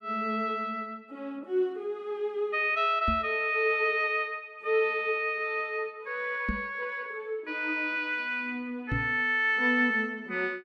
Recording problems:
microphone bump; at 3 s, at 6.5 s and at 9 s; peak +1 dB vs average level

